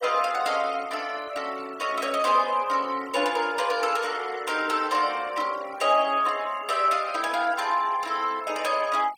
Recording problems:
noise reduction artefacts; signal-to-artefact ratio 20 dB

